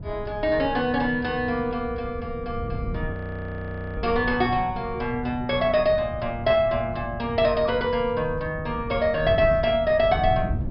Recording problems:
treble cut off; nothing above 5.3 kHz
wind on the microphone; below 160 Hz, SNR 11 dB
frozen audio; at 3 s for 1 s

